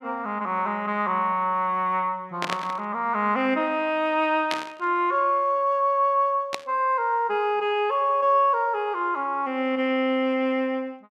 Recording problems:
burst of static; at 2.5 s, at 4.5 s and at 6.5 s; peak 0 dB vs average level

